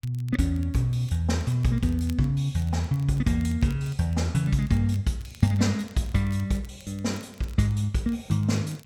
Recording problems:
crackling; vinyl, SNR 28 dB

